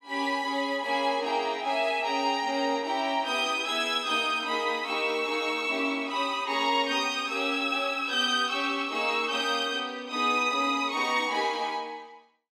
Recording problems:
none

